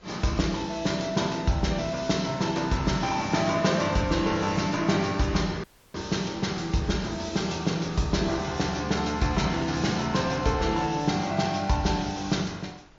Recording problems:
lossy codec; MP3, log-spectral distance 5 dB, nothing above 7.1 kHz
wind on the microphone; below 2 kHz, SNR 23 dB
audio cutting out; at 5.5 s

